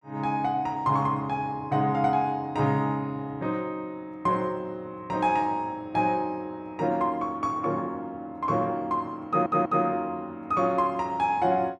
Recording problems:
audio stuttering; at 9.5 s

